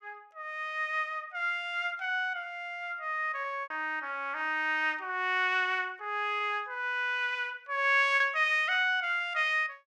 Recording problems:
lost packets; 1.9% of the sound replaced, filled with repeated pitch periods

